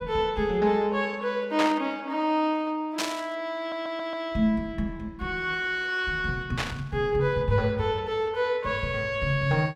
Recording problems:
burst of static; at 1.5 s, at 3 s and at 6.5 s; peak +2 dB vs average level
stutter; at 3.5 s

